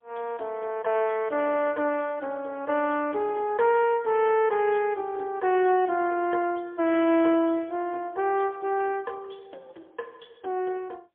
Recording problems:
phone line; 280 Hz to 3.3 kHz, AMR-NB, then MP3

